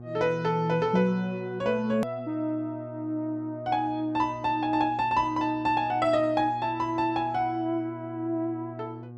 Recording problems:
hum; 60 Hz, harmonics up to 1.1 kHz, SNR 15 dB
hard cut with a click; at 2 s

